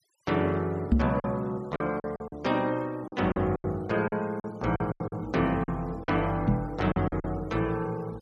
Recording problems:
denoising artefacts; signal-to-artefact ratio 26 dB
lost packets; 10% of the sound replaced, filled with silence
knock on the microphone; at 1 s and at 6.5 s; peak +10 dB vs average level

